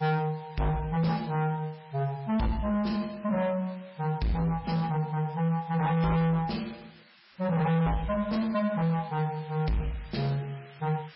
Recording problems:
codec artefacts; MP3, log-spectral distance 6 dB, nothing above 5.5 kHz
distortion; soft clipping, signal-to-distortion ratio 8 dB
background hiss; SNR 24 dB

